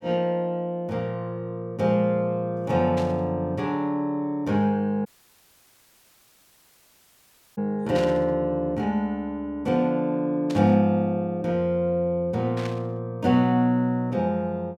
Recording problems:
static burst; 4 times, first at 3 s; peak -9 dB vs average level
audio cutting out; at 5 s for 2.5 s

